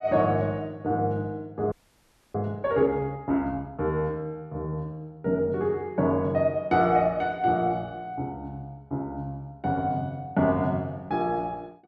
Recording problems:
audio freezing; at 1.5 s for 0.5 s

